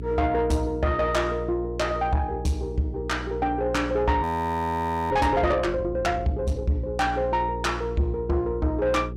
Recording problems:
distortion; soft clipping, signal-to-distortion ratio 10 dB
hum; 60 Hz, harmonics up to 420 Hz, SNR 10 dB
frozen audio; at 4 s for 1 s

